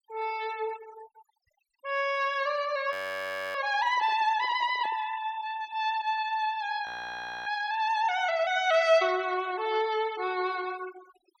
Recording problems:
noise reduction artefacts; signal-to-artefact ratio 19 dB
frozen audio; at 3 s for 0.5 s and at 7 s for 0.5 s
microphone handling noise; from 4 to 5 s; peak -13 dB vs average level

